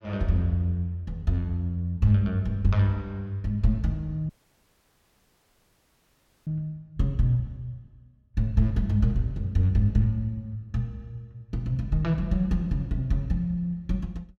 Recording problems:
audio cutting out; at 4.5 s for 2 s

